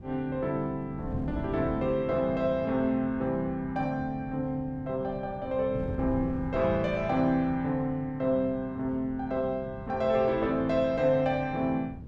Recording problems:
wind on the microphone; below 200 Hz, SNR 13 dB

